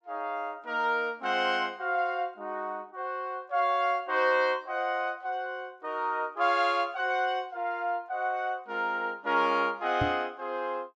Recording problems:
microphone thump; at 10 s; peak +2 dB vs average level

